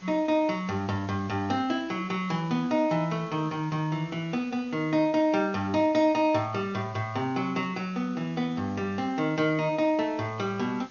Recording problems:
lossy compression; MP2, log-spectral distance 3 dB, nothing above 6.3 kHz
background hiss; slope -2 dB per octave, SNR 25 dB

